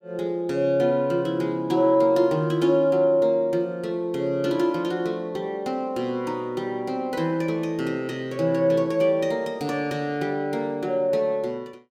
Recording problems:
none

